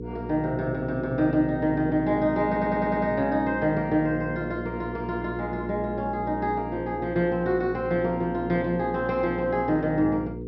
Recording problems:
treble cut off; nothing above 5.7 kHz
hum; 60 Hz, harmonics up to 480 Hz, SNR 10 dB
stutter; at 2.5 s

